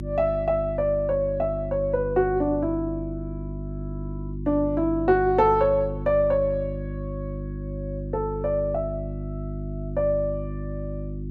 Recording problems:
hum; 50 Hz, harmonics up to 350 Hz, SNR 9 dB

